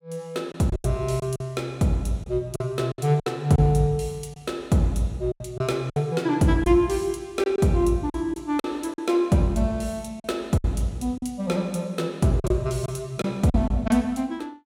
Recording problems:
lost packets; 7% of the sound replaced, filled with silence

